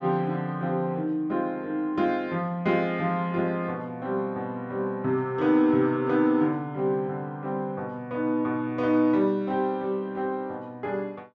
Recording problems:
none

